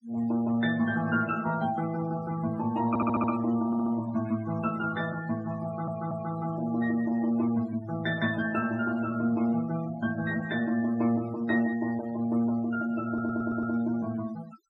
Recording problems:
noise reduction artefacts; signal-to-artefact ratio 17 dB
stutter; 4 times, first at 3 s

